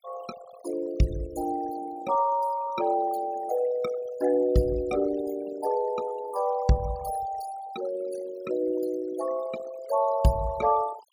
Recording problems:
noise reduction artefacts; signal-to-artefact ratio 15 dB

